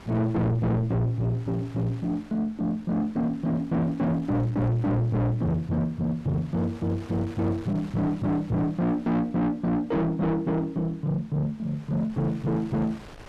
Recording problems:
distorted audio; soft clipping, signal-to-distortion ratio 5 dB
wind on the microphone; below 1.6 kHz, SNR 23 dB

